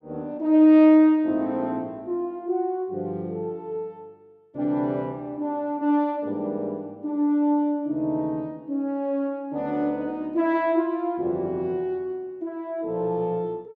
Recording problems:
none

